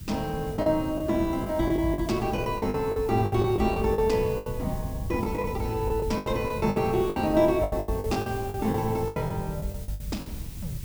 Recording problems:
background hiss; slope +4 dB per octave, SNR 19 dB
low-frequency rumble; below 120 Hz, SNR 11 dB
packet loss; 14% of the sound replaced, filled with the last packet

